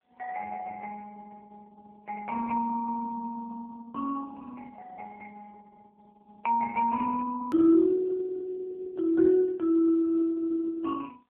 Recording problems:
telephone audio; 340 Hz to 2.3 kHz, AMR-NB
hard cut with a click; at 7.5 s

